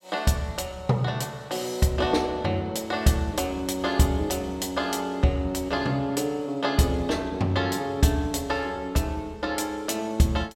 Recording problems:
none

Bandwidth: 16 kHz